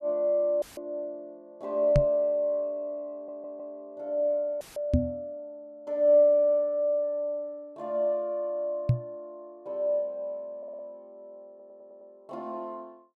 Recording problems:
dropout; at 0.5 s and at 4.5 s; filled with static
knock on the microphone; at 2 s, at 5 s and at 9 s; peak +8 dB vs average level
stutter; at 3 s and at 11 s

